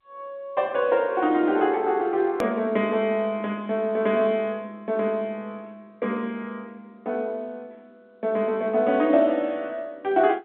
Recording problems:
telephone audio; 190 Hz to 3.7 kHz, G.711
click at an edit; at 2.5 s

